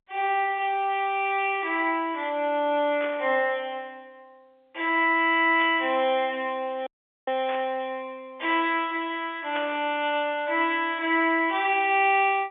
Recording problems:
telephone audio; 280 Hz to 3.5 kHz, G.711
burst of static; 4 times, first at 3 s; peak -7 dB vs average level
dropout; at 7 s

